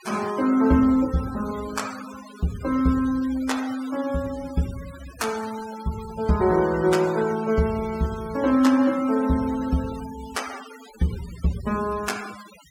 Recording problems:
denoising artefacts; signal-to-artefact ratio 17 dB

